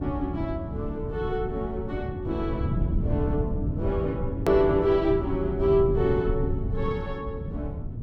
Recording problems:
low-frequency rumble; below 160 Hz, SNR 4 dB
click at an edit; at 4.5 s

